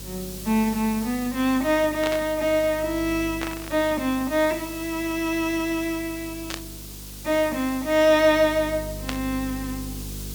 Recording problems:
hum; 50 Hz, harmonics up to 500 Hz, SNR 16 dB
hiss; SNR 14 dB
static burst; 4 times, first at 2 s; peak -2 dB vs average level

